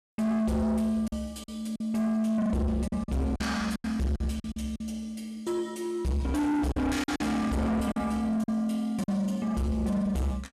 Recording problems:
distortion; soft clipping, signal-to-distortion ratio 7 dB
lost packets; 7% of the sound replaced, filled with silence

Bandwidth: 14 kHz